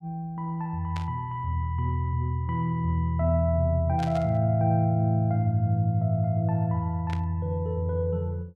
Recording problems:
static burst; at 1 s, at 4 s and at 7 s; peak -9 dB vs average level

